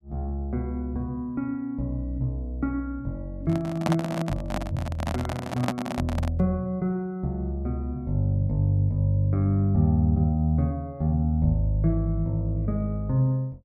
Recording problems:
microphone handling noise; from 3.5 to 6.5 s; peak +4 dB vs average level

